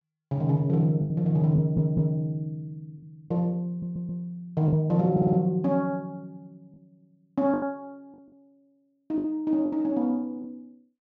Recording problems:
low-pass filter; nothing above 8 kHz
packet loss; 5% of the sound replaced, filled with the last packet
stutter; at 1.5 s, at 3.5 s and at 5 s

